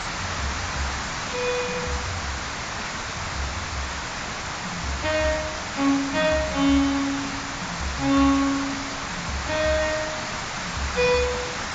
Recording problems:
codec artefacts; AAC, log-spectral distance 16 dB, nothing above 7.3 kHz
hiss; SNR 3 dB

